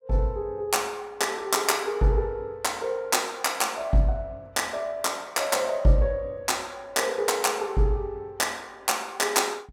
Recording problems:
none

